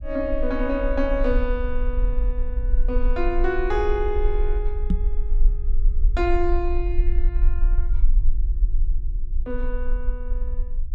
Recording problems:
rumble; below 40 Hz, strongest tone 20 Hz, SNR -1 dB
microphone thump; at 5 s; peak +7 dB vs average level

